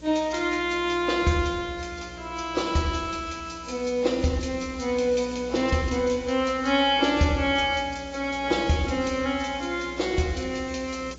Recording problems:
codec artefacts; AAC, log-spectral distance 6 dB, nothing above 7.6 kHz
hum; 60 Hz, harmonics up to 600 Hz, SNR 22 dB
hiss; slope -1 dB per octave, SNR 26 dB

